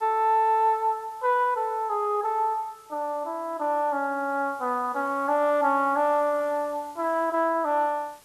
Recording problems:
hiss; slope -1 dB per octave, SNR 29 dB

